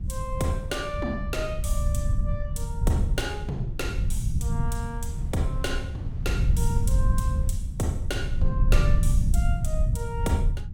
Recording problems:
rumble; below 92 Hz, SNR -5 dB
wind noise; below 480 Hz, SNR 22 dB

